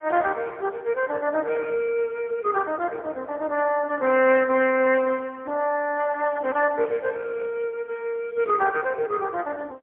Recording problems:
telephone audio; 300 Hz to 3.7 kHz, AMR-NB, then MP3

